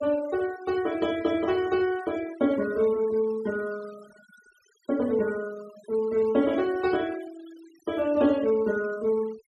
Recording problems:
noise reduction artefacts; signal-to-artefact ratio 20 dB

